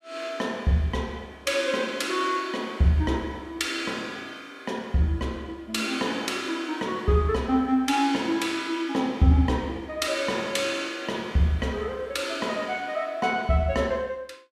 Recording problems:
none

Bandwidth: 14.5 kHz